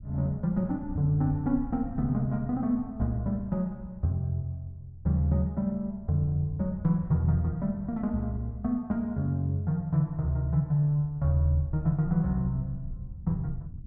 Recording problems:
rumble; below 100 Hz, SNR 17 dB

